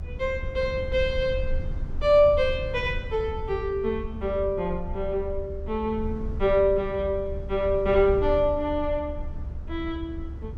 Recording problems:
rumble; below 72 Hz, strongest tone 20 Hz, SNR 10 dB

